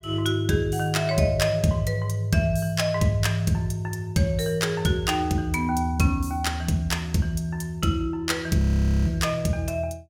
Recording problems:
audio freezing; at 8.5 s

